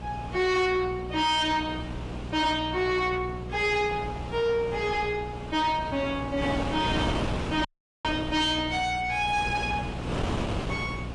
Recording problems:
lossy compression; AAC, log-spectral distance 3 dB
distortion; soft clipping, signal-to-distortion ratio 9 dB
hum; 60 Hz, harmonics up to 480 Hz, SNR 12 dB
wind on the microphone; below 950 Hz, SNR 8 dB
dropout; at 7.5 s

